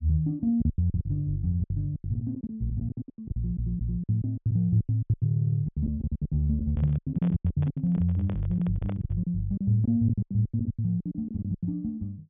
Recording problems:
treble missing; nothing above 3.6 kHz
lost packets; 21% of the sound replaced, filled with silence
audio stuttering; at 3.5 s and at 5.5 s
microphone handling noise; from 6.5 to 9 s; peak -8 dB vs average level

